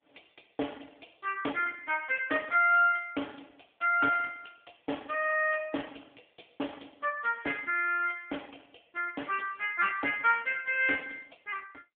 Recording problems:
phone line; 260 Hz to 3.2 kHz, AMR-NB

